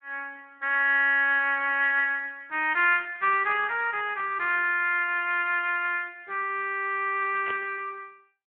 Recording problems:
phone line; 300 Hz to 3.1 kHz, Speex
static burst; at 7.5 s; peak -6 dB vs average level

